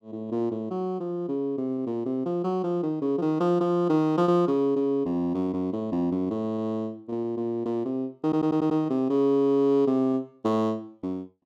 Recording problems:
lost packets; 2% of the sound replaced, filled with repeated pitch periods
stutter; at 8 s

